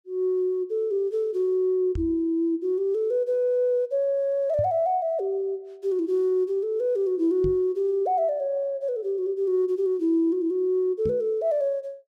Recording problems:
microphone bump; 4 times, first at 2 s; peak -3 dB vs average level

